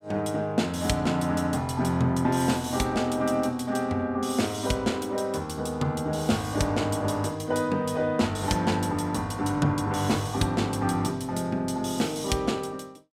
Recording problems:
none

